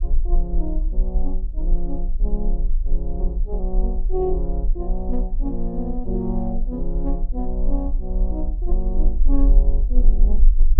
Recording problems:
low-frequency rumble; below 38 Hz, strongest tone 22 Hz, SNR -6 dB

